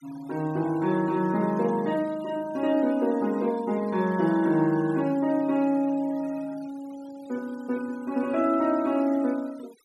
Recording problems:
noise reduction artefacts; signal-to-artefact ratio 24 dB

